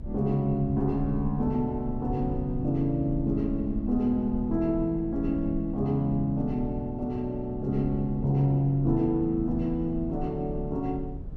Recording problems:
low-frequency rumble; below 98 Hz, strongest tone 28 Hz, SNR 11 dB

